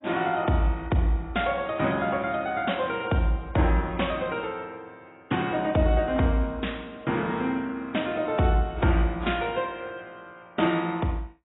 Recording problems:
lossy codec; AAC, log-spectral distance 3 dB, nothing above 3.8 kHz

